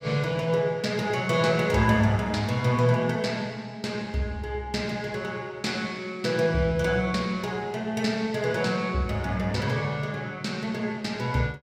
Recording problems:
none

